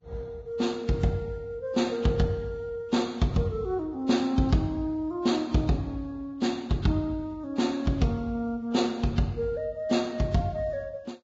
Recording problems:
lossy codec; Vorbis, log-spectral distance 2 dB, nothing above 7.3 kHz

